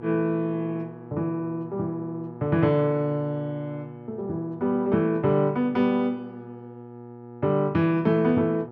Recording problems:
hum; 60 Hz, harmonics up to 1.3 kHz, SNR 17 dB

